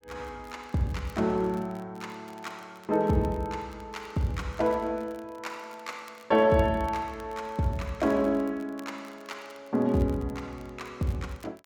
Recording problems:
crackling; vinyl, SNR 27 dB

